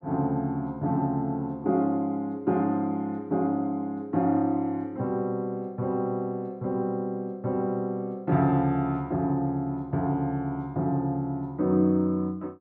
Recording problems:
none

